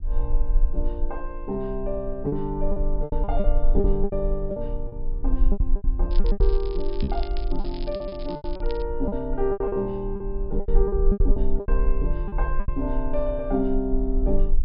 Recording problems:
treble missing; nothing above 5.5 kHz
low-frequency rumble; below 38 Hz, strongest tone 20 Hz, SNR -1 dB
packet loss; 11% of the sound replaced, filled with repeated pitch periods
crackling; from 6 to 9 s; loose cable, SNR 17 dB
microphone thump; at 7 s; peak +6 dB vs average level

